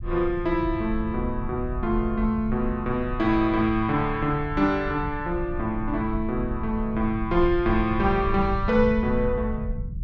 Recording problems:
rumble; below 82 Hz, SNR 9 dB

